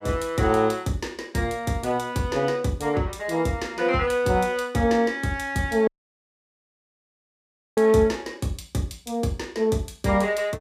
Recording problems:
dropout; at 6 s for 2 s

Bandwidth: 15 kHz